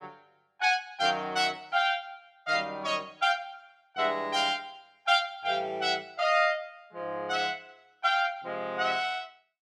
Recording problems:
none

